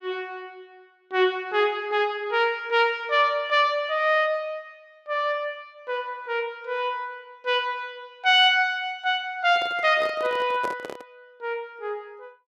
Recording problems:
microphone handling noise; from 9.5 to 11 s; peak -4 dB vs average level

